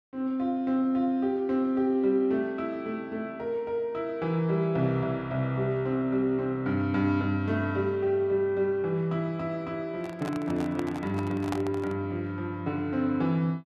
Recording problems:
microphone handling noise; from 10 to 12 s; peak -1 dB vs average level

